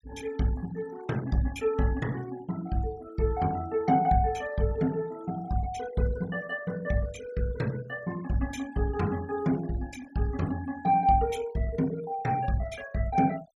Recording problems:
denoising artefacts; signal-to-artefact ratio 20 dB

